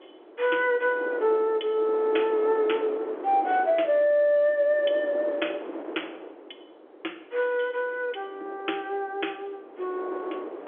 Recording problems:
phone line; 280 Hz to 3.5 kHz, G.711
wind on the microphone; below 660 Hz, SNR 13 dB

